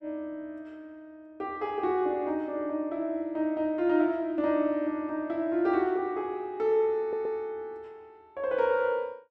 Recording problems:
stutter; at 7 s

